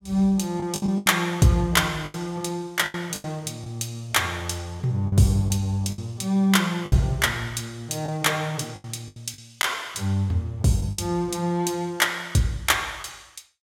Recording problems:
lost packets; 7% of the sound replaced, filled with the last packet

